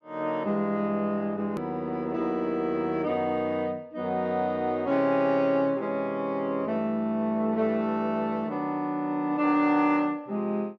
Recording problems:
click at an edit; at 1.5 s

